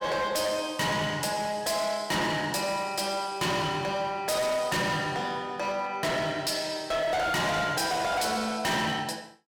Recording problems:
distorted audio; hard clipping, signal-to-distortion ratio 6 dB

